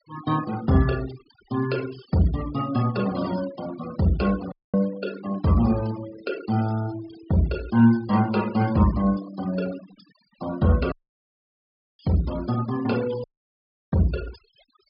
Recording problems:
treble missing; nothing above 5.5 kHz
denoising artefacts; signal-to-artefact ratio 18 dB
audio cutting out; at 4.5 s, at 11 s for 1 s and at 13 s for 0.5 s

